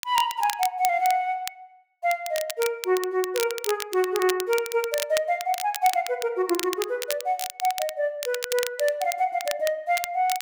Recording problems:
crackling; vinyl, SNR 9 dB

